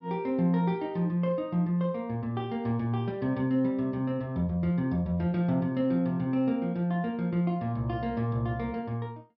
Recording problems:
low-pass filter; nothing above 5.6 kHz

